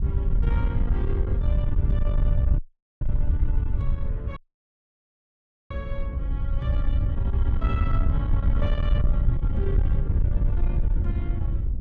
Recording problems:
distorted audio; soft clipping, signal-to-distortion ratio 12 dB
hum; 60 Hz, harmonics up to 600 Hz, SNR 22 dB
wind noise; below 82 Hz, SNR -10 dB
audio cutting out; at 2.5 s and at 4.5 s for 1.5 s

